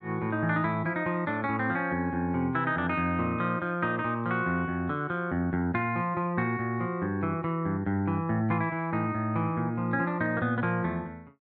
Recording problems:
none

